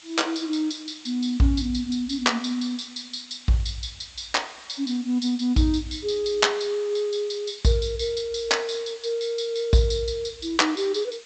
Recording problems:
treble cut off; nothing above 8 kHz
hiss; SNR 21 dB

